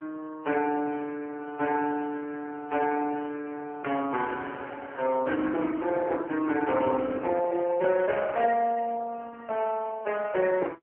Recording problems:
telephone audio; 260 Hz to 3.2 kHz, AMR-NB

